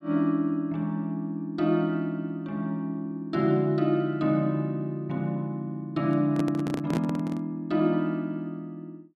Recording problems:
handling noise; from 6 to 7.5 s; peak 0 dB vs average level

